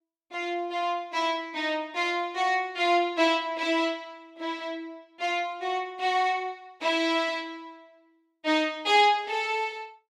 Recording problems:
none

